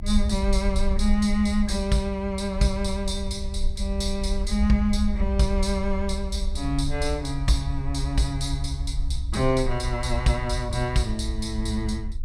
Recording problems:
low-frequency rumble; below 62 Hz, SNR 4 dB

